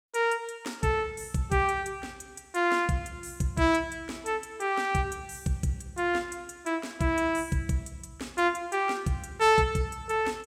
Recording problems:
none

